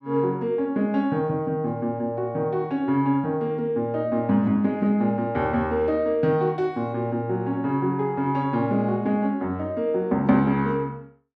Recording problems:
none

